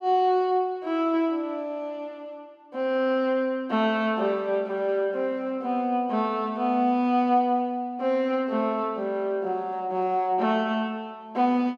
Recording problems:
none

